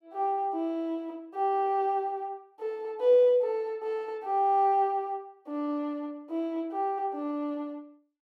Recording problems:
none

